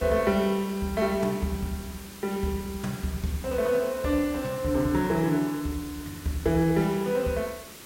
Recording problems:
background hiss; SNR 16 dB

